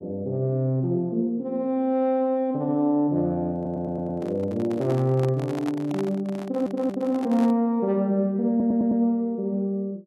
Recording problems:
audio stuttering; at 3.5 s, at 6.5 s and at 8.5 s
microphone handling noise; from 3.5 to 7.5 s; peak -6 dB vs average level

